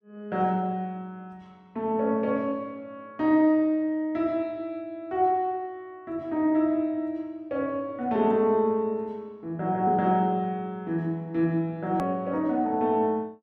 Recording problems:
hard cut with a click; at 12 s

